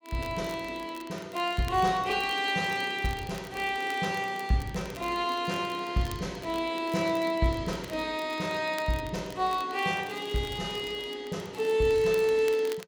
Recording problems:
crackle; vinyl, SNR 20 dB

